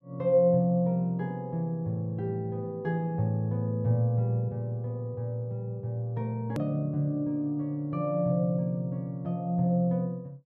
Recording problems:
edit click; at 6.5 s

